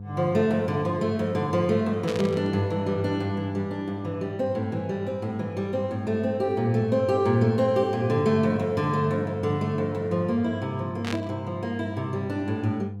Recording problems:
hum; 50 Hz, harmonics up to 500 Hz, SNR 11 dB
burst of static; at 2 s and at 11 s; peak -4 dB vs average level

